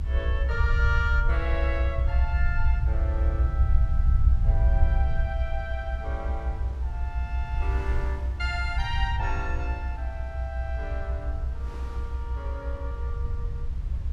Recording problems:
low-frequency rumble; below 66 Hz, SNR -7 dB
wind on the microphone; below 840 Hz, SNR 14 dB

